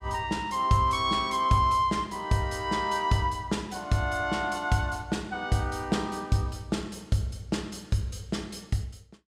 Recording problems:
none

